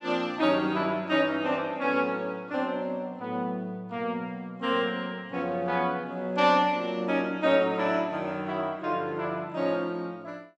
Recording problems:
none

